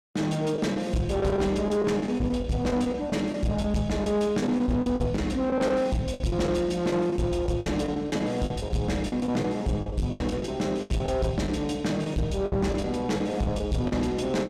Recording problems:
distortion; soft clipping, signal-to-distortion ratio 10 dB
lost packets; 12% of the sound replaced, filled with the last packet

